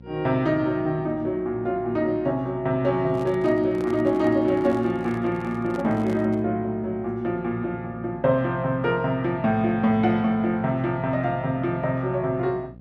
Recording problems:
electrical hum; 60 Hz, harmonics up to 780 Hz, SNR 21 dB
microphone handling noise; from 3 to 6.5 s; peak -10 dB vs average level

